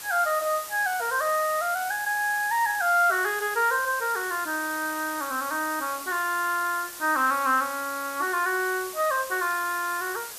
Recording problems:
background hiss; slope 0 dB per octave, SNR 11 dB

